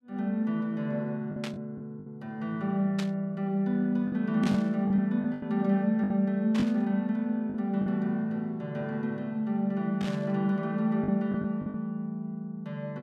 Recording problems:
lost packets; 5% of the sound replaced, filled with the last packet
burst of static; 5 times, first at 1.5 s; peak -4 dB vs average level

